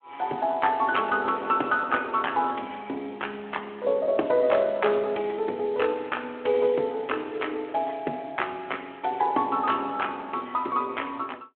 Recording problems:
telephone audio; 260 Hz to 3.3 kHz, Speex

